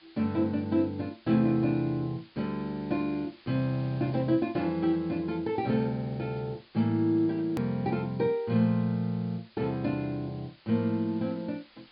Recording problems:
treble missing; nothing above 5 kHz
hiss; SNR 27 dB
edit click; at 7.5 s

